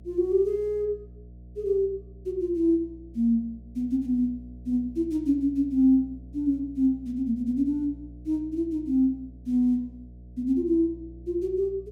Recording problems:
mains hum; 60 Hz, harmonics up to 540 Hz, SNR 19 dB

